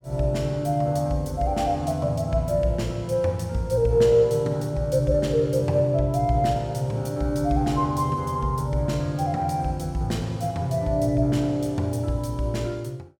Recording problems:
none

